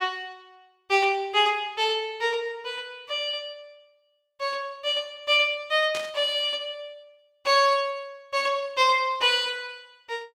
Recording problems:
burst of static; at 6 s; peak -6 dB vs average level

